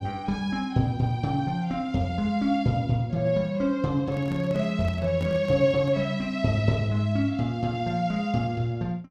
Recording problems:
handling noise; from 4 to 6 s; peak -7 dB vs average level

